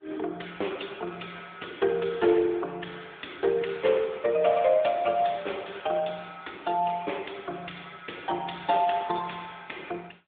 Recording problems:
telephone audio; 240 Hz to 3.6 kHz, AMR-NB
crackling; at 3 s, from 3.5 to 5.5 s and at 5.5 s; loose cable, SNR 22 dB

